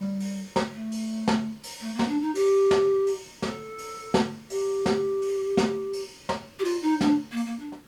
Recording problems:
hiss; SNR 27 dB

